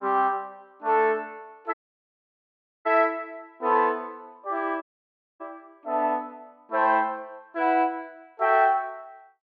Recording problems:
audio cutting out; at 1.5 s for 1 s and at 5 s for 0.5 s

